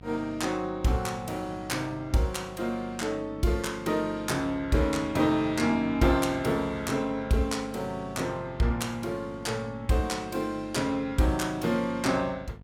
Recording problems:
hum; 50 Hz, harmonics up to 950 Hz, SNR 19 dB

